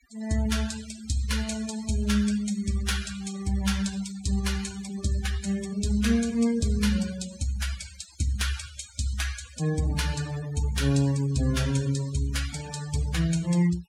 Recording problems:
denoising artefacts; signal-to-artefact ratio 13 dB

